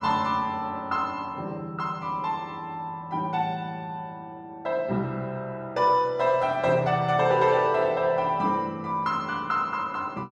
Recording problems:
none

